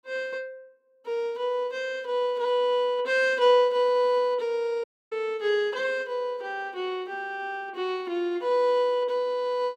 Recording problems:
audio cutting out; at 5 s

